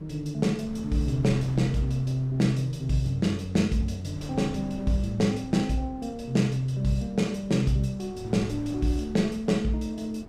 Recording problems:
hum; 50 Hz, harmonics up to 450 Hz, SNR 23 dB
wind noise; below 240 Hz, SNR 17 dB

